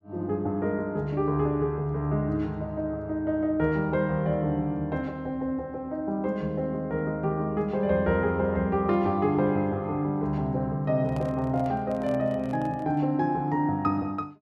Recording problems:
microphone handling noise; from 11 to 13 s; peak -8 dB vs average level

